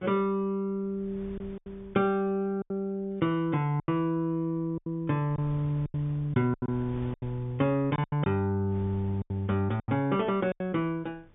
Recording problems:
low-pass filter; nothing above 3.6 kHz
wind on the microphone; below 290 Hz, SNR 22 dB
lost packets; 9% of the sound replaced, filled with silence

